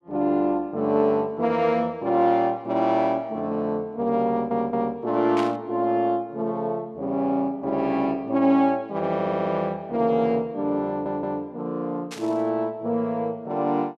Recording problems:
audio stuttering; at 4.5 s, at 9 s and at 11 s
static burst; at 5.5 s and at 12 s; peak -6 dB vs average level

